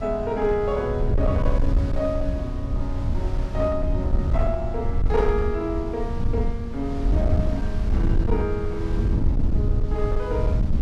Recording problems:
distortion; hard clipping, signal-to-distortion ratio 12 dB
low-frequency rumble; below 90 Hz, SNR -2 dB
wind on the microphone; below 860 Hz, SNR 14 dB

